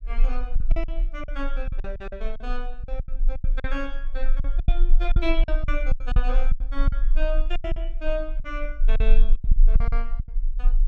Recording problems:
low-frequency rumble; below 32 Hz, strongest tone 22 Hz, SNR -7 dB
packet loss; 15% of the sound replaced, filled with silence
burst of static; at 7.5 s; peak -29 dB vs average level

